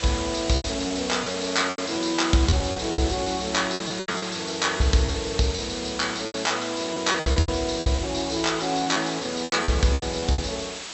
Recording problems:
treble missing; nothing above 8 kHz
hiss; slope 0 dB per octave, SNR 8 dB
lost packets; 13% of the sound replaced, filled with repeated pitch periods

